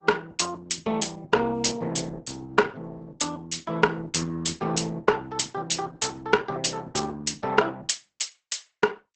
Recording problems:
codec artefacts; Opus, log-spectral distance 5 dB, nothing above 8 kHz

